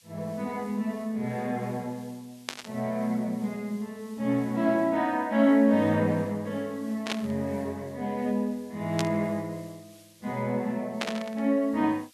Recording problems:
hiss; slope +4 dB per octave, SNR 27 dB
burst of static; 4 times, first at 2.5 s; peak +2 dB vs average level

